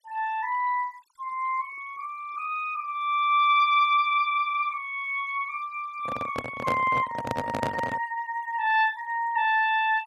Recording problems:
noise reduction artefacts; signal-to-artefact ratio 25 dB
microphone handling noise; from 6 to 8 s; peak 0 dB vs average level

